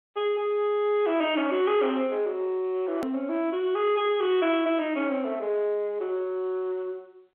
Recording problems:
phone line; 220 Hz to 3.3 kHz, G.711
distorted audio; soft clipping, signal-to-distortion ratio 12 dB
click at an edit; at 3 s

